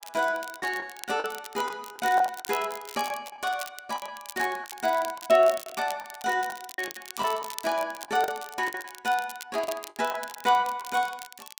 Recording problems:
crackling; vinyl, SNR 14 dB
lost packets; 11% of the sound replaced, filled with the last packet

